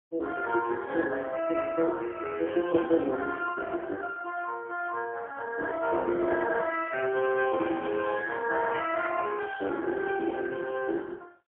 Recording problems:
phone line; 300 Hz to 2.6 kHz, AMR-NB, then MP3

